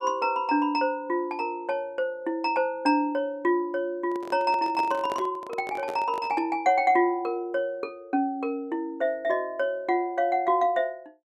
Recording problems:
handling noise; from 4 to 6.5 s; peak -5 dB vs average level

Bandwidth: 14.5 kHz